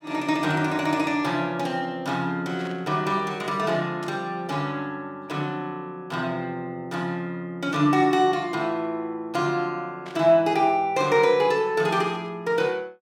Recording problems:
static burst; 4 times, first at 2.5 s; peak -12 dB vs average level

